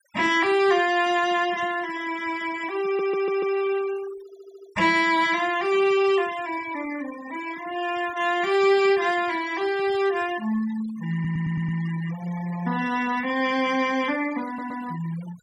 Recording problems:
noise reduction artefacts; signal-to-artefact ratio 17 dB
audio stuttering; 4 times, first at 3 s

